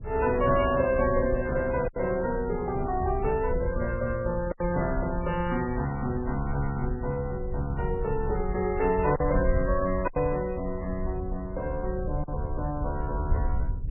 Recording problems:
lossy compression; MP3, log-spectral distance 2 dB, nothing above 2.5 kHz
wind noise; below 76 Hz, SNR 7 dB
packet loss; 2% of the sound replaced, filled with silence

